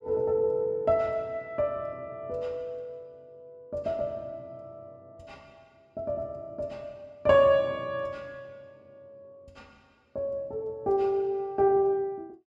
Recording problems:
none

